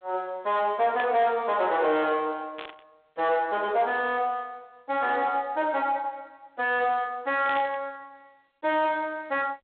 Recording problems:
phone line; 320 Hz to 3.7 kHz, G.726
distortion; soft clipping, signal-to-distortion ratio 7 dB
burst of static; at 1 s, at 2.5 s and at 7.5 s; peak -7 dB vs average level

